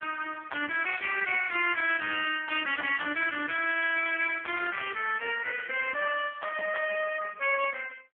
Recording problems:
telephone audio; 240 Hz to 3.3 kHz, AMR-NB

